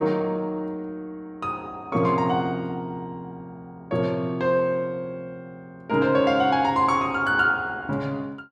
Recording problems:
none

